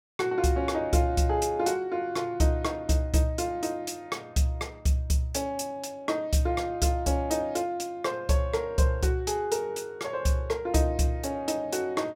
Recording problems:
none

